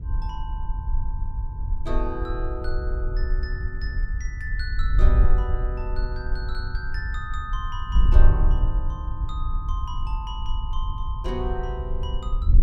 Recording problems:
wind noise; below 54 Hz, SNR -8 dB

